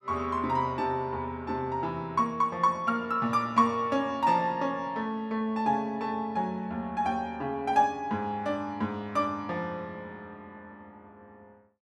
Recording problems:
none

